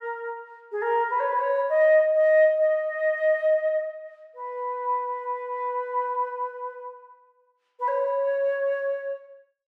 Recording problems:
none

